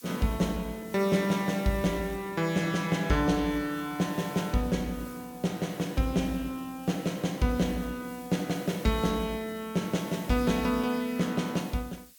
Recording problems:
hiss; slope +5 dB per octave, SNR 20 dB

